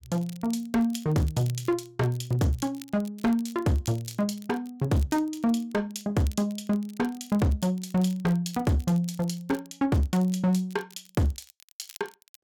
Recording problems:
distorted audio; hard clipping, signal-to-distortion ratio 12 dB
crackle; vinyl, SNR 23 dB

